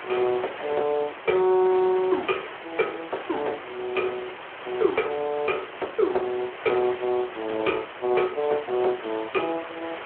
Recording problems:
phone line; 280 Hz to 3.3 kHz, Speex
background hiss; SNR 11 dB

